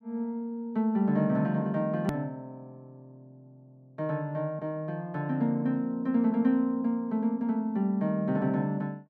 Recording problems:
hard cut with a click; at 2 s

